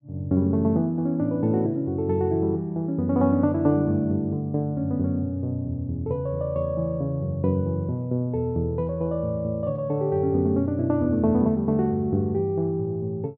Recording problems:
none

